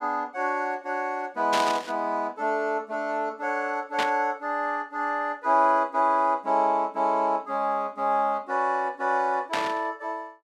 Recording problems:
burst of static; at 1.5 s, at 4 s and at 9.5 s; peak +1 dB vs average level

